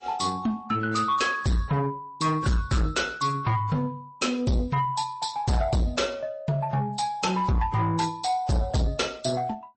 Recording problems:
lossy codec; AAC, then MP3, log-spectral distance 3 dB, nothing above 8.2 kHz
distortion; soft clipping, signal-to-distortion ratio 7 dB

